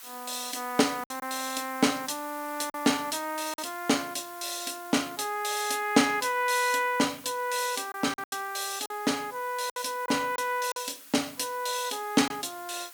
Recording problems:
background hiss; SNR 16 dB
packet loss; 4% of the sound replaced, filled with silence

